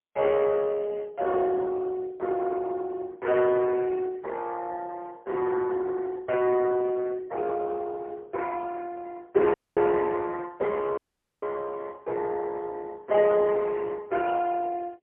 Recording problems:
phone line; 300 Hz to 2.5 kHz, AMR-NB, then MP3
audio cutting out; at 9.5 s and at 11 s

